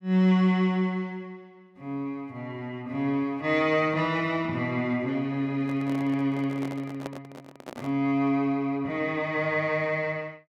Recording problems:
microphone handling noise; from 5.5 to 8 s; peak -5 dB vs average level

